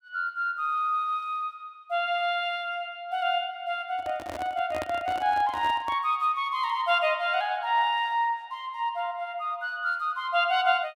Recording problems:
handling noise; from 4 to 6 s; peak -3 dB vs average level

